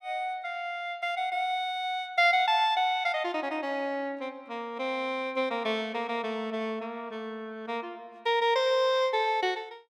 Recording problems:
none

